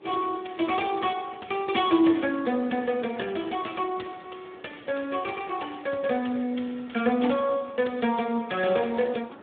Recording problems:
phone line; 190 Hz to 3.5 kHz, Speex
wind on the microphone; below 960 Hz, SNR 24 dB

